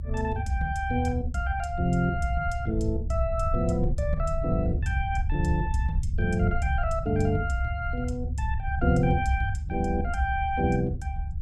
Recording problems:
rumble; below 84 Hz, SNR 3 dB

